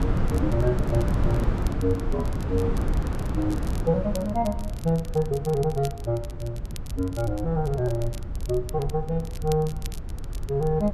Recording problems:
rumble; below 74 Hz, SNR 10 dB
wind noise; below 200 Hz, SNR 3 dB
crackling; vinyl, SNR 19 dB

